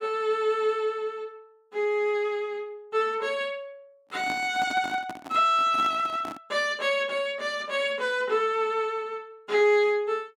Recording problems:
handling noise; from 4 to 6.5 s; peak -6 dB vs average level

